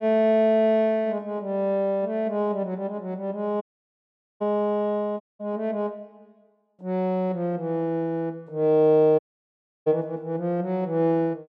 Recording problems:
audio cutting out; at 3.5 s for 1 s, at 5 s and at 9 s for 0.5 s

